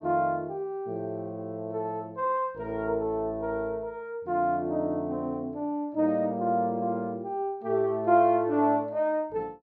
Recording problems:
none

